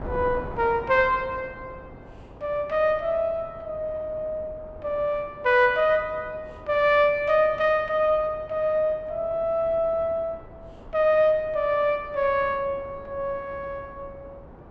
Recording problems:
wind on the microphone; below 620 Hz, SNR 19 dB

